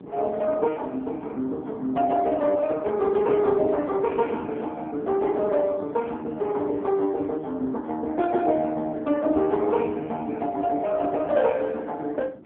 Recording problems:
telephone audio; 220 Hz to 3.6 kHz, AMR-NB
wind on the microphone; below 380 Hz, SNR 18 dB

